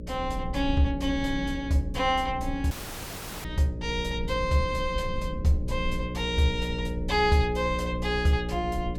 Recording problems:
electrical hum; 60 Hz, harmonics up to 600 Hz, SNR 7 dB
low-frequency rumble; below 76 Hz, SNR 11 dB
dropout; at 2.5 s for 0.5 s

